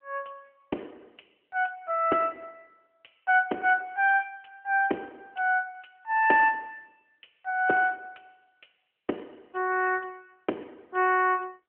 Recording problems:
telephone audio; 260 Hz to 3 kHz, AMR-NB

